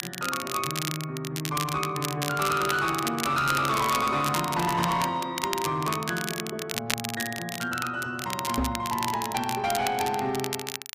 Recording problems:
distortion; hard clipping, uneven, signal-to-distortion ratio 11 dB
crackle; vinyl, SNR 6 dB
microphone bump; at 8.5 s; peak +4 dB vs average level

